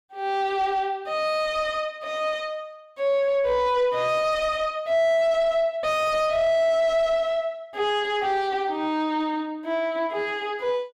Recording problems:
distorted audio; soft clipping, signal-to-distortion ratio 11 dB

